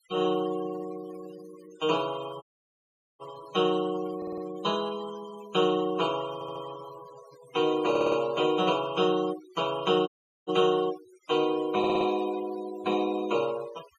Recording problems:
noise reduction artefacts; signal-to-artefact ratio 18 dB
audio cutting out; at 2.5 s for 1 s and at 10 s
audio stuttering; 4 times, first at 4 s

